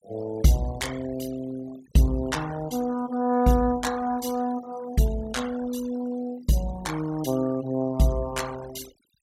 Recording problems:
noise reduction artefacts; signal-to-artefact ratio 18 dB

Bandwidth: 16.5 kHz